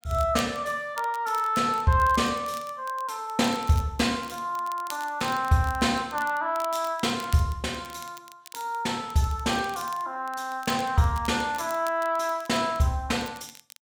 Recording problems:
crackling; vinyl, SNR 19 dB

